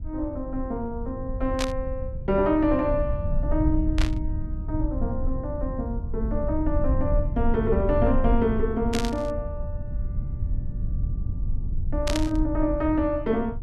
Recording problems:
low-frequency rumble; below 82 Hz, SNR 3 dB
static burst; 4 times, first at 1.5 s; peak +2 dB vs average level

